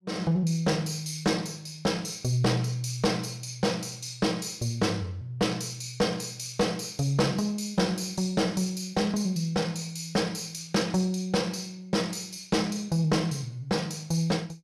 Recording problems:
distorted audio; soft clipping, signal-to-distortion ratio 12 dB

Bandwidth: 14.5 kHz